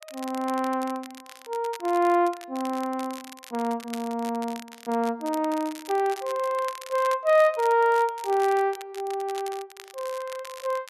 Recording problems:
crackle; vinyl, SNR 18 dB

